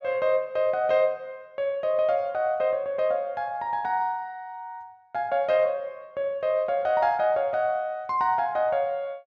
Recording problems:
none

